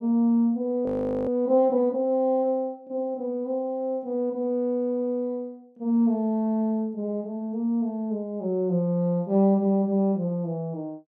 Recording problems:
audio freezing; at 1 s

